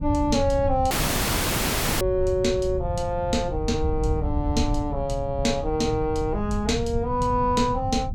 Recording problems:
rumble; below 130 Hz, SNR 9 dB
wind on the microphone; below 90 Hz, SNR 8 dB
audio cutting out; at 1 s for 1 s

